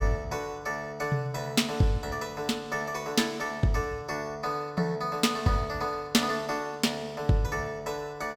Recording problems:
none

